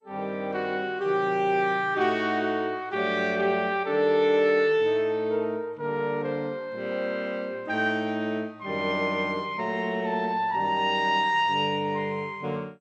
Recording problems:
lossy compression; MP2, log-spectral distance 2 dB

